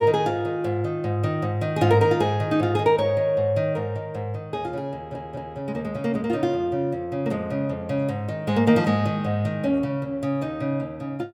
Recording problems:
stutter; at 5 s

